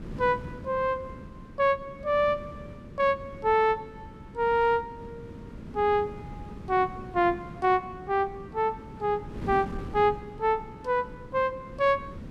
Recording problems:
wind noise; below 280 Hz, SNR 15 dB

